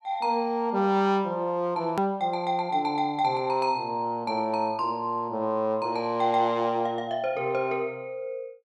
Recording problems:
hard cut with a click; at 2 s

